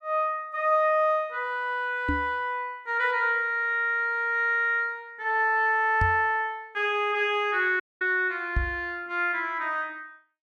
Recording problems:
microphone bump; at 2 s, at 6 s and at 8.5 s; peak +2 dB vs average level
audio cutting out; at 8 s

